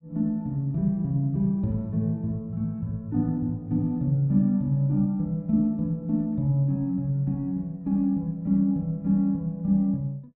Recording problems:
none

